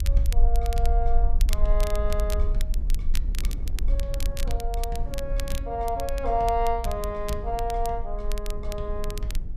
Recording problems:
low-frequency rumble; below 48 Hz, strongest tone 22 Hz, SNR -1 dB
wind on the microphone; below 190 Hz, SNR 13 dB
crackling; vinyl, SNR 11 dB

